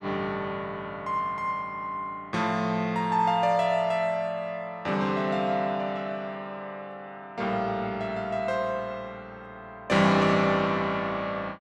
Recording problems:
none

